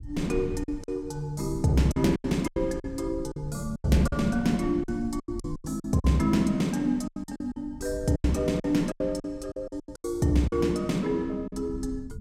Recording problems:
rumble; below 110 Hz, SNR 15 dB
lost packets; 13% of the sound replaced, filled with silence

